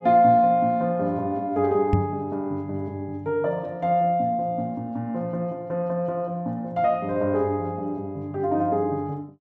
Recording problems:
knock on the microphone; at 2 s; peak +6 dB vs average level

